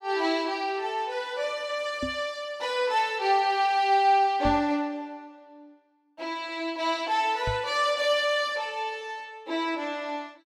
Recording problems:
knock on the microphone; at 2 s, at 4.5 s and at 7.5 s; peak -2 dB vs average level

